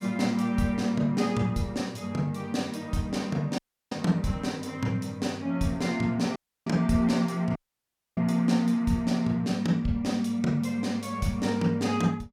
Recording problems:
dropout; at 3.5 s, at 6.5 s and at 7.5 s for 0.5 s

